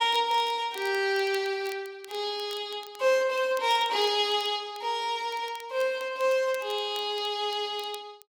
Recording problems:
crackle; vinyl, SNR 22 dB

